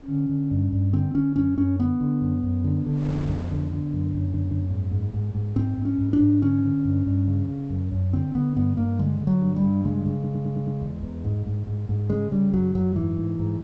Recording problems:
treble cut off; nothing above 7.9 kHz
wind on the microphone; below 440 Hz, SNR 22 dB
audio stuttering; at 4 s and at 10 s

